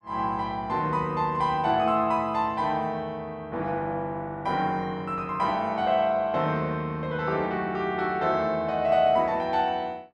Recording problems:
none

